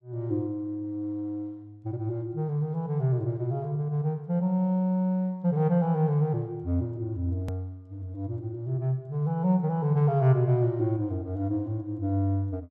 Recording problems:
hard cut with a click; at 7.5 s

